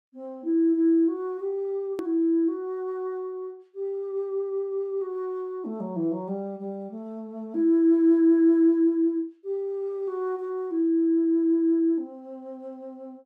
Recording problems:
hard cut with a click; at 2 s

